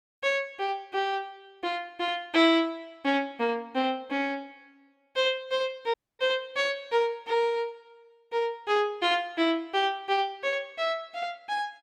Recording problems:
dropout; at 6 s

